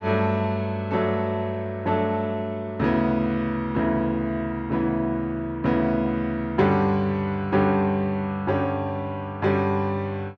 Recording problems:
none

